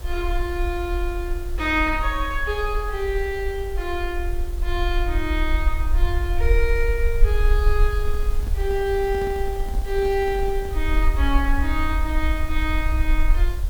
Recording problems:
background hiss; SNR 17 dB
rumble; below 54 Hz, SNR 0 dB
microphone handling noise; from 8 to 11 s; peak -7 dB vs average level

